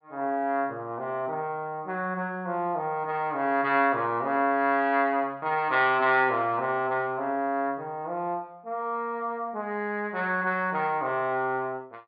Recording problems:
low-pass filter; nothing above 4.8 kHz

